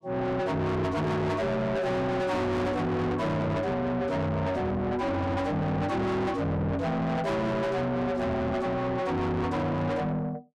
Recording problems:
distortion; soft clipping, signal-to-distortion ratio 6 dB

